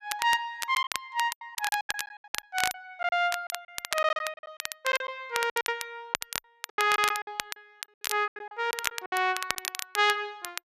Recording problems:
crackle; vinyl, SNR 6 dB
packet loss; 16% of the sound replaced, filled with silence

